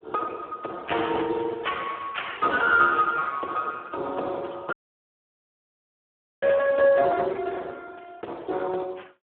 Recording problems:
telephone audio; 320 Hz to 3.3 kHz, Speex
dropout; at 4.5 s for 1.5 s

